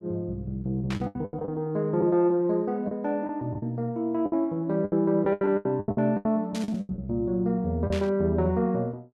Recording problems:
packet loss; 12% of the sound replaced, filled with the last packet
burst of static; at 1 s, at 6.5 s and at 8 s; peak -6 dB vs average level

